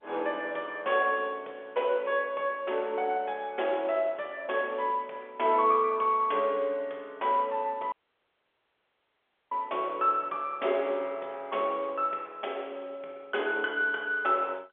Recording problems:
telephone audio; 320 Hz to 3.5 kHz, G.711
audio cutting out; at 8 s for 1.5 s

